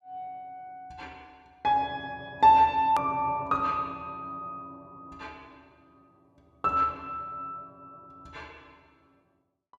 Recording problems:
click at an edit; at 3 s

